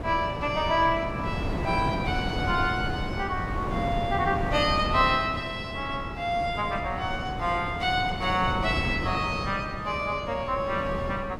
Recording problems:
wind noise; below 480 Hz, SNR 6 dB

